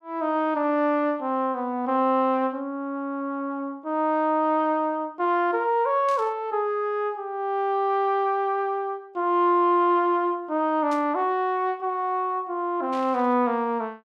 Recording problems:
burst of static; at 6 s, at 11 s and at 13 s; peak -14 dB vs average level

